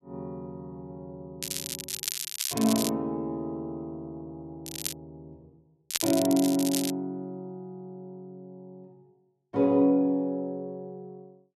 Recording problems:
crackle; from 1.5 to 3 s, at 4.5 s and from 6 to 7 s; loose cable, SNR 4 dB

